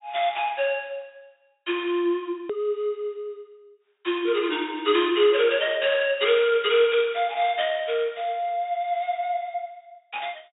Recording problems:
treble missing; nothing above 4 kHz
click at an edit; at 2.5 s

